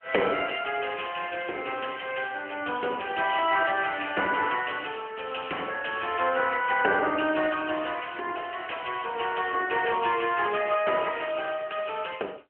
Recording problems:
telephone audio; 280 Hz to 3.1 kHz, AMR-NB

